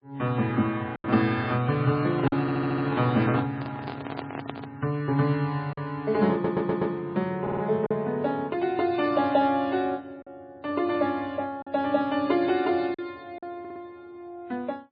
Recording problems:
lossy compression; MP3, log-spectral distance 2 dB, nothing above 4.5 kHz
packet loss; 3% of the sound replaced, filled with silence
handling noise; from 2 to 5 s; peak -3 dB vs average level
audio stuttering; 4 times, first at 2.5 s

